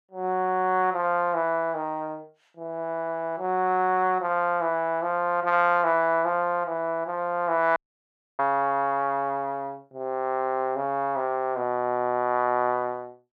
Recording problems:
audio cutting out; at 8 s for 0.5 s

